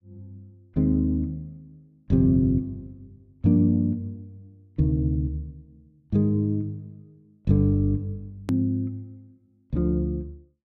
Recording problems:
hard cut with a click; at 8.5 s

